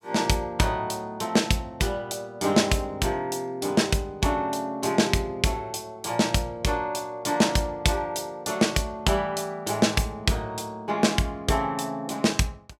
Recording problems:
none

